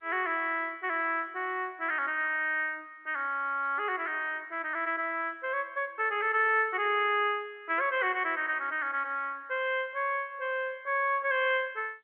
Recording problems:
phone line; 280 Hz to 3.3 kHz, G.711

